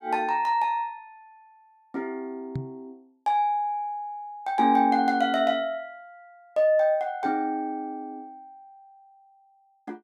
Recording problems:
microphone thump; at 2.5 s; peak -2 dB vs average level

